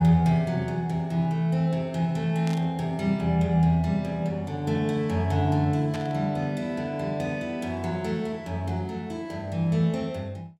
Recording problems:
burst of static; at 2.5 s and at 6 s; peak -9 dB vs average level

